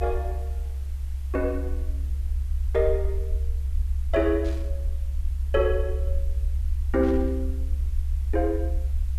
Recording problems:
background hiss; slope -2 dB per octave, SNR 27 dB
low-frequency rumble; below 70 Hz, strongest tone 68 Hz, SNR 1 dB
burst of static; at 4.5 s and at 7 s; peak -15 dB vs average level

